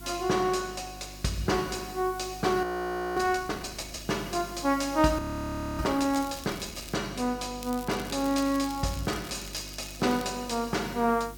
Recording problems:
hum; 50 Hz, harmonics up to 350 Hz, SNR 18 dB
background hiss; slope +1 dB per octave, SNR 20 dB
frozen audio; at 2.5 s for 0.5 s and at 5 s for 0.5 s
crackling; at 6 s and from 7.5 to 10 s; loose cable, SNR 16 dB

